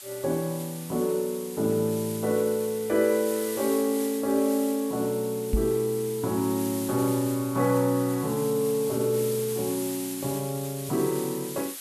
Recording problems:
hiss; slope +3 dB per octave, SNR 11 dB
microphone bump; at 5.5 s; peak +5 dB vs average level

